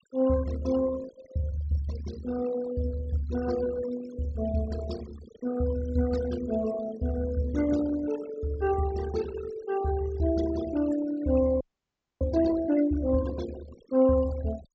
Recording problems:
treble cut off; nothing above 8 kHz
noise reduction artefacts; signal-to-artefact ratio 15 dB
frozen audio; at 12 s for 0.5 s

